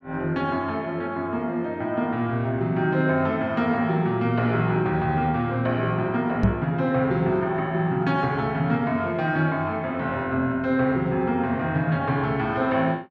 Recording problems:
microphone thump; at 6.5 s; peak +8 dB vs average level

